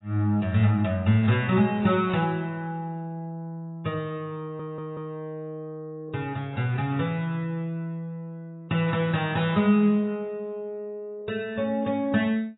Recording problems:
lossy codec; AAC, log-spectral distance 2 dB, nothing above 3.8 kHz
stutter; at 4.5 s

